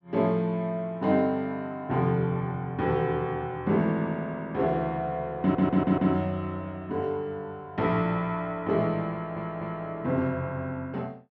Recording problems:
stutter; at 5.5 s and at 9 s

